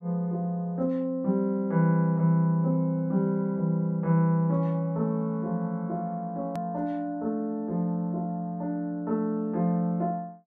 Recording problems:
click at an edit; at 6.5 s

